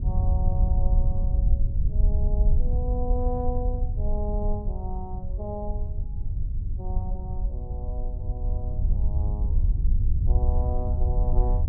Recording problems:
rumble; below 70 Hz, SNR -10 dB

